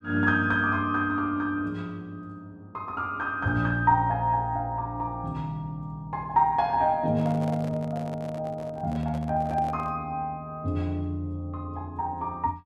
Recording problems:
handling noise; from 7 to 10 s; peak -8 dB vs average level

